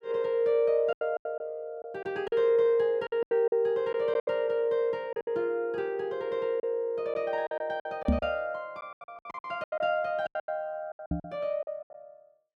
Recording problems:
packet loss; 13% of the sound replaced, filled with silence
microphone thump; at 8 s and at 11 s; peak +7 dB vs average level

